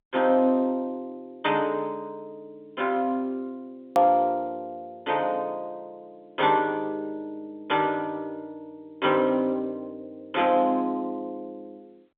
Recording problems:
phone line; 280 Hz to 3.6 kHz, G.711
edit click; at 4 s

